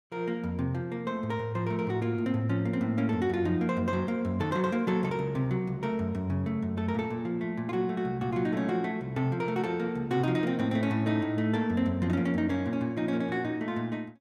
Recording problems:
none

